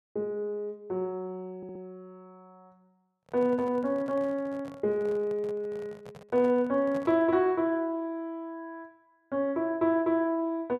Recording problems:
audio stuttering; at 1.5 s
microphone handling noise; from 3 to 7.5 s; peak -10 dB vs average level

